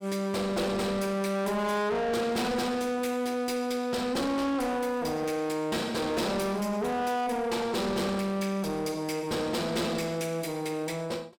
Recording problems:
distortion; soft clipping, signal-to-distortion ratio 7 dB

